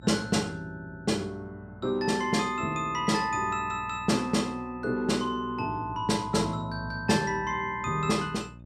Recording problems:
electrical hum; 60 Hz, harmonics up to 660 Hz, SNR 19 dB

